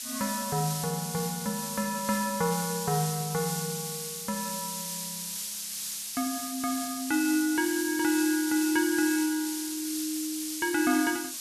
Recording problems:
hiss; SNR 4 dB

